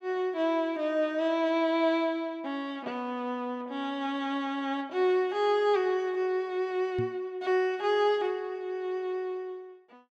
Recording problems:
microphone bump; at 7 s; peak -3 dB vs average level

